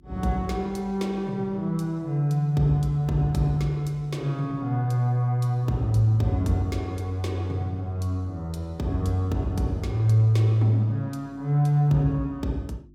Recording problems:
electrical hum; 50 Hz, harmonics up to 350 Hz, SNR 29 dB

